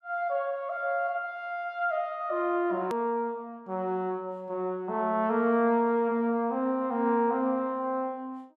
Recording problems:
hard cut with a click; at 3 s

